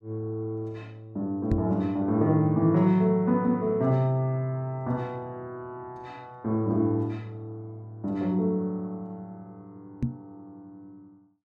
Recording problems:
knock on the microphone; at 1.5 s and at 10 s; peak +5 dB vs average level

